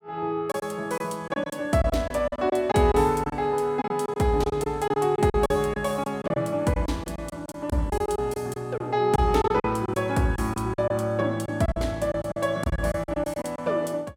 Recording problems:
lost packets; 12% of the sound replaced, filled with silence

